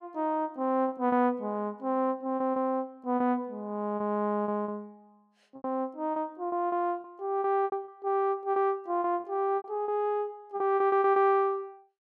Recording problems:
packet loss; 11% of the sound replaced, filled with repeated pitch periods

